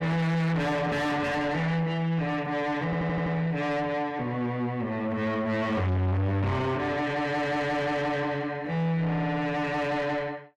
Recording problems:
distortion; soft clipping, signal-to-distortion ratio 5 dB
audio stuttering; at 3 s

